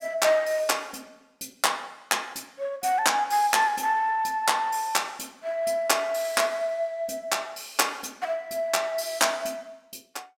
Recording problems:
none

